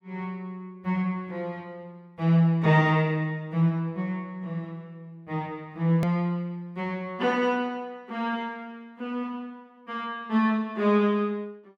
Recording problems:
edit click; at 6 s

